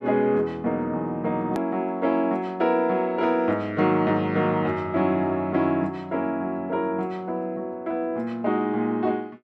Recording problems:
hard cut with a click; at 1.5 s

